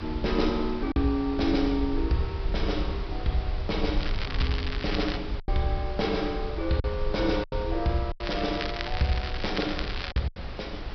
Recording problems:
treble missing; nothing above 5.5 kHz
background hiss; SNR 12 dB
rumble; below 64 Hz, SNR 6 dB
lost packets; 4% of the sound replaced, filled with silence
crackle; from 4 to 5 s and from 8 to 10 s; loose cable, SNR 7 dB

